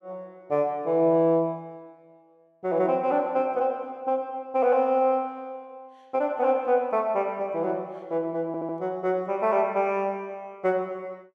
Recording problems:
audio stuttering; at 8.5 s

